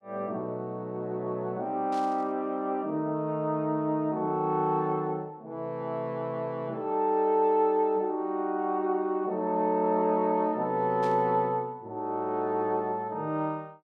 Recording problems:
burst of static; at 2 s and at 11 s; peak -14 dB vs average level

